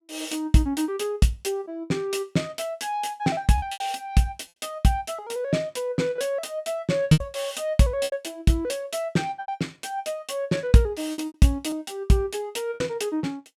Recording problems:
packet loss; 5% of the sound replaced, filled with repeated pitch periods

